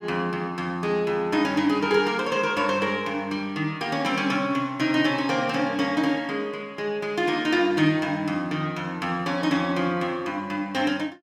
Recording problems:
none

